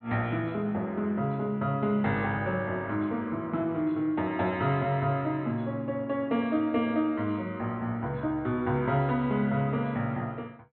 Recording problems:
treble cut off; nothing above 4.1 kHz

